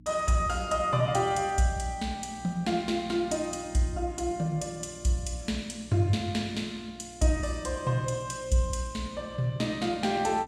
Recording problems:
electrical hum; 60 Hz, harmonics up to 300 Hz, SNR 21 dB

